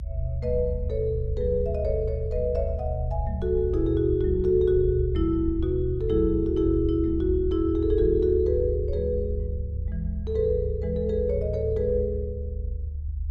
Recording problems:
low-frequency rumble; below 76 Hz, strongest tone 74 Hz, SNR 5 dB

